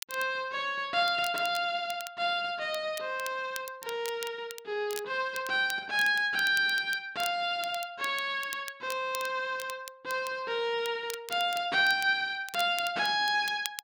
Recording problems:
crackle; vinyl, SNR 15 dB

